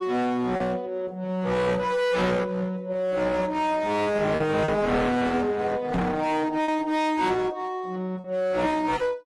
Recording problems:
lossy codec; AAC, then AAC, log-spectral distance 2 dB, nothing above 11.6 kHz
distorted audio; hard clipping, signal-to-distortion ratio 7 dB
lost packets; 2% of the sound replaced, filled with repeated pitch periods
knock on the microphone; at 6 s; peak +3 dB vs average level

